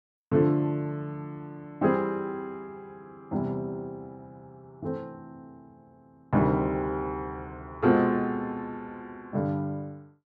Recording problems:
none

